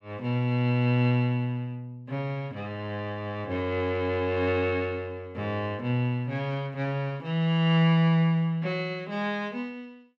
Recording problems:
none

